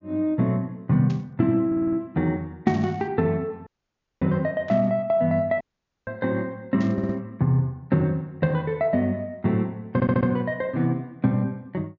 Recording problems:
treble cut off; nothing above 7.1 kHz
static burst; 4 times, first at 1 s; peak -15 dB vs average level
stutter; at 1.5 s, at 7 s and at 10 s
audio cutting out; at 3.5 s for 0.5 s and at 5.5 s

